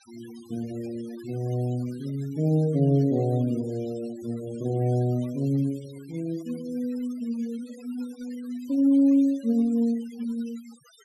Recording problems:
denoising artefacts; signal-to-artefact ratio 24 dB

